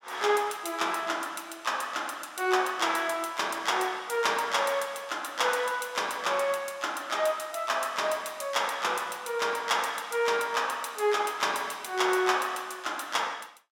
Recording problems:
none

